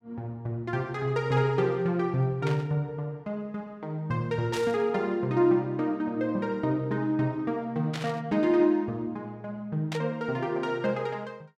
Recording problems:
burst of static; 4 times, first at 2.5 s; peak -4 dB vs average level

